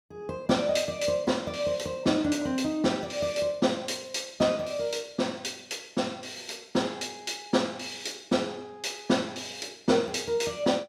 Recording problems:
none

